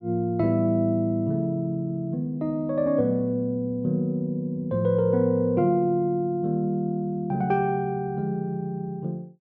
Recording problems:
none

